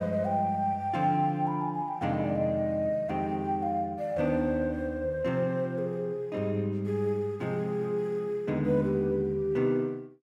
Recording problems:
none

